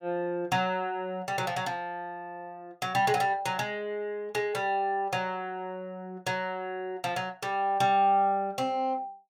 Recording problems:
none

